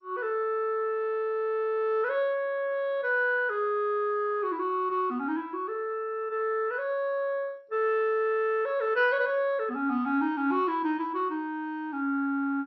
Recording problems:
codec artefacts; MP2, log-spectral distance 2 dB, nothing above 5.5 kHz

